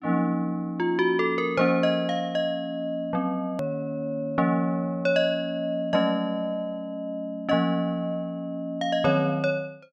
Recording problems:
edit click; at 3.5 s

